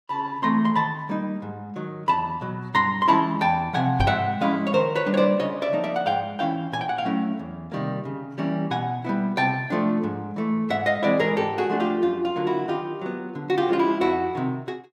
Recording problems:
knock on the microphone; at 4 s; peak +3 dB vs average level

